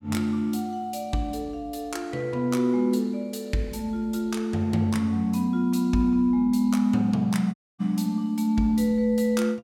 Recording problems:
audio cutting out; at 7.5 s

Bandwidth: 17 kHz